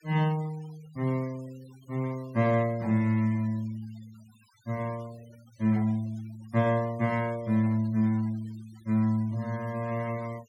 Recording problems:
noise reduction artefacts; signal-to-artefact ratio 24 dB

